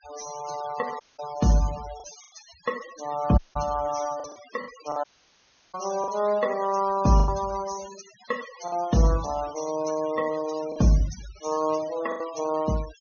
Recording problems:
treble missing; nothing above 6.6 kHz
noise reduction artefacts; signal-to-artefact ratio 17 dB
lost packets; 5% of the sound replaced, filled with the last packet
audio cutting out; at 1 s, at 3.5 s and at 5 s for 0.5 s

